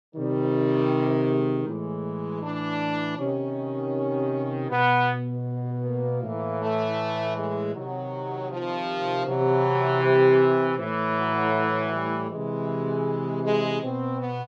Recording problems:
none

